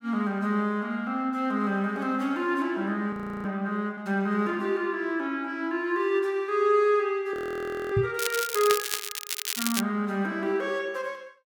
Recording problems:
frozen audio; at 3 s and at 7.5 s for 0.5 s
microphone bump; at 8 s; peak +3 dB vs average level
crackling; from 8 to 10 s; loose cable, SNR 3 dB

